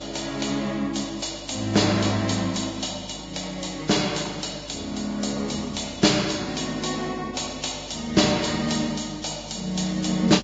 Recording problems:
lossy compression; Vorbis, log-spectral distance 10 dB, nothing above 7.6 kHz
hum; 50 Hz, harmonics up to 550 Hz, SNR 22 dB

